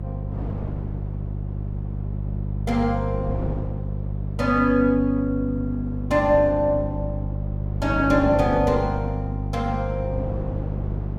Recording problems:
electrical hum; 50 Hz, harmonics up to 400 Hz, SNR 6 dB
wind on the microphone; below 410 Hz, SNR 14 dB

